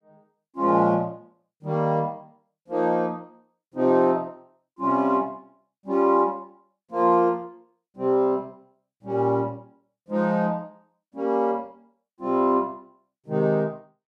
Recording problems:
none

